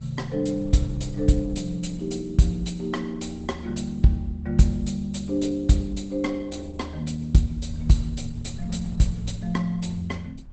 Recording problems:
codec artefacts; Opus, log-spectral distance 3 dB, nothing above 8 kHz
wind noise; below 88 Hz, SNR 18 dB

